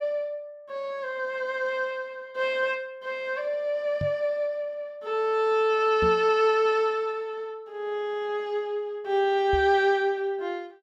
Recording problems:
knock on the microphone; at 4 s, at 6 s and at 9.5 s; peak -2 dB vs average level

